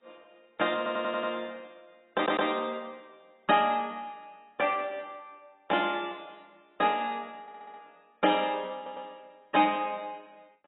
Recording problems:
lossy compression; AAC, log-spectral distance 3 dB, nothing above 3.2 kHz
stutter; 4 times, first at 1 s

